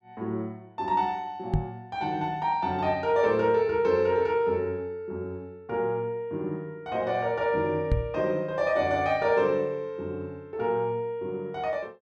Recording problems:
microphone thump; at 1.5 s and at 8 s; peak +6 dB vs average level

